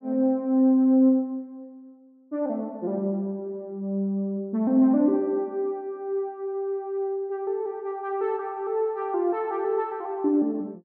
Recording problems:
none

